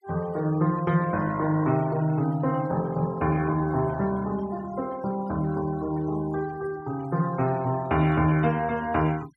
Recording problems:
noise reduction artefacts; signal-to-artefact ratio 22 dB

